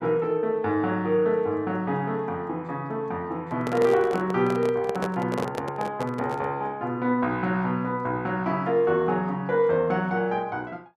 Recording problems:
handling noise; from 3.5 to 6.5 s; peak 0 dB vs average level

